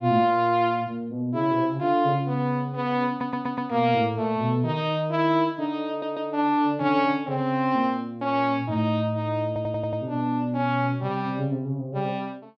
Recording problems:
audio stuttering; at 3 s, at 6 s and at 9.5 s

